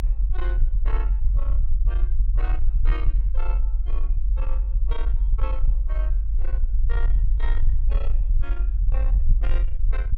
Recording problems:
distorted audio; soft clipping, signal-to-distortion ratio 12 dB
rumble; below 46 Hz, SNR -16 dB

